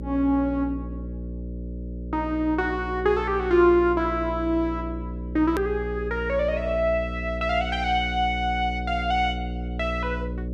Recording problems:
hum; 60 Hz, harmonics up to 600 Hz, SNR 8 dB
hard cut with a click; at 5.5 s

